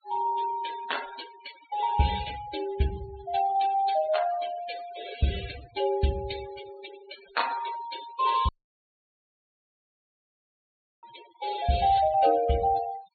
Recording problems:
treble cut off; nothing above 4.4 kHz
noise reduction artefacts; signal-to-artefact ratio 12 dB
audio cutting out; at 8.5 s for 2.5 s

